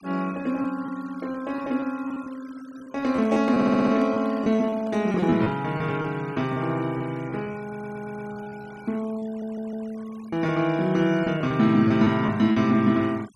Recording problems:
noise reduction artefacts; signal-to-artefact ratio 24 dB
packet loss; 8% of the sound replaced, filled with repeated pitch periods
handling noise; from 3 to 5.5 s; peak -13 dB vs average level
stutter; at 3.5 s, at 7.5 s and at 9.5 s

